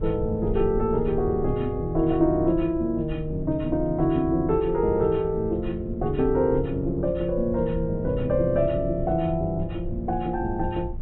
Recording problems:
low-pass filter; nothing above 3.9 kHz
low-frequency rumble; below 78 Hz, SNR 12 dB

